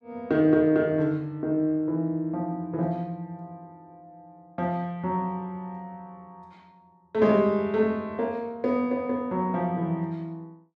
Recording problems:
none

